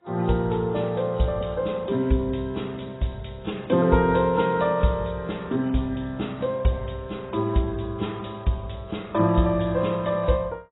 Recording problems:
lossy compression; AAC, log-spectral distance 5 dB, nothing above 3.8 kHz

